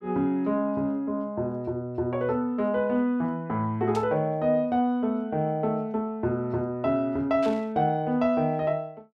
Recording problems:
burst of static; at 4 s and at 7.5 s; peak -10 dB vs average level

